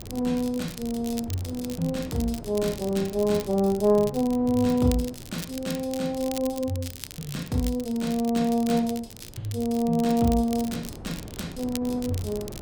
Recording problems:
wind noise; below 370 Hz, SNR 17 dB
crackling; vinyl, SNR 15 dB

